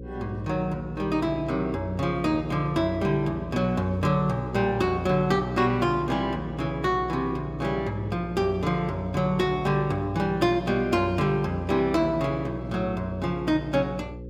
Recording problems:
hum; 60 Hz, harmonics up to 540 Hz, SNR 13 dB

